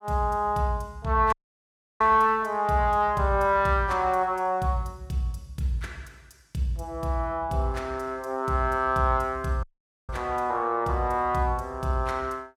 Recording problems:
audio cutting out; at 1.5 s for 0.5 s and at 9.5 s

